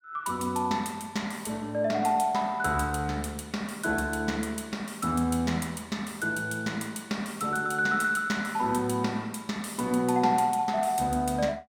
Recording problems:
none

